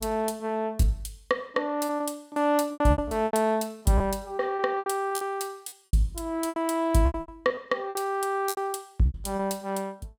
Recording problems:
lost packets; 13% of the sound replaced, filled with repeated pitch periods

